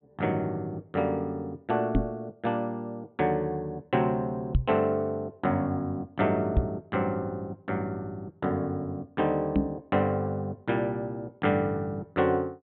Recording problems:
treble missing; nothing above 4 kHz
microphone bump; 4 times, first at 2 s; peak +8 dB vs average level

